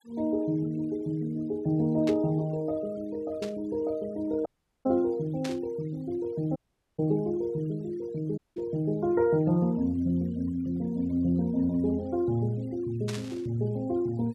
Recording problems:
noise reduction artefacts; signal-to-artefact ratio 27 dB
static burst; 5 times, first at 2 s; peak -5 dB vs average level
dropout; at 4.5 s, at 6.5 s and at 8.5 s

